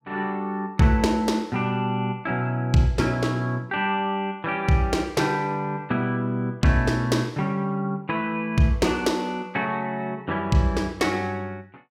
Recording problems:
none

